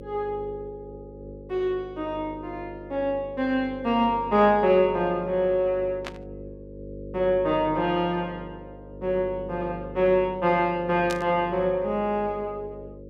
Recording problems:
hum; 50 Hz, harmonics up to 550 Hz, SNR 15 dB
burst of static; at 6 s and at 11 s; peak -5 dB vs average level

